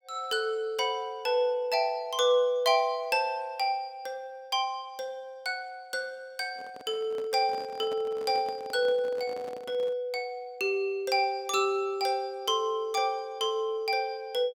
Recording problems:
handling noise; from 6.5 to 10 s; peak -10 dB vs average level

